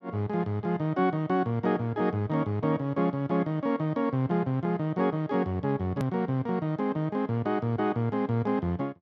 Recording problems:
edit click; at 6 s

